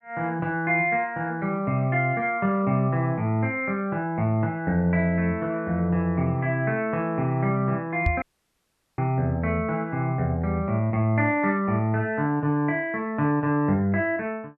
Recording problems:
microphone thump; at 8 s; peak +4 dB vs average level
dropout; at 8 s for 1 s

